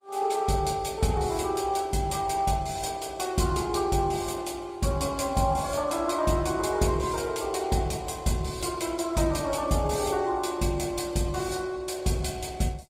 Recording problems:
lossy compression; Opus, log-spectral distance 5 dB, nothing above 18.9 kHz

